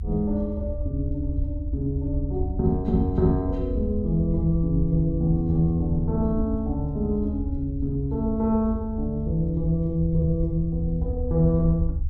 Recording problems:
low-frequency rumble; below 78 Hz, SNR 5 dB

